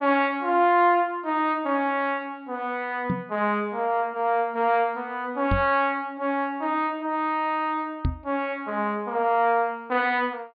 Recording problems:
treble cut off; nothing above 4.9 kHz
microphone thump; at 3 s, at 5.5 s and at 8 s; peak +3 dB vs average level

